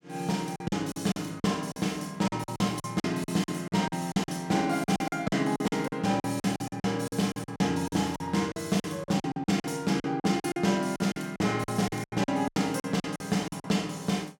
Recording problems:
packet loss; 17% of the sound replaced, filled with silence

